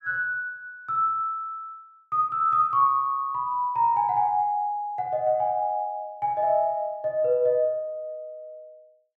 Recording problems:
none

